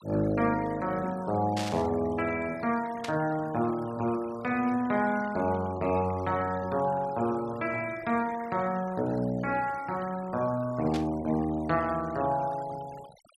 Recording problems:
denoising artefacts; signal-to-artefact ratio 19 dB
burst of static; at 1.5 s, at 3 s and at 11 s; peak -3 dB vs average level

